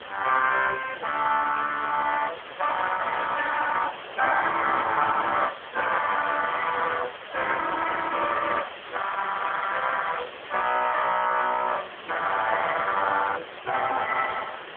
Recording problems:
phone line; 340 Hz to 3.1 kHz, AMR-NB
background hiss; SNR 13 dB

